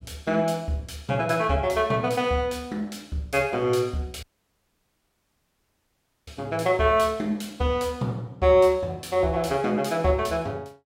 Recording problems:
audio cutting out; at 4 s for 2 s

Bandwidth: 16 kHz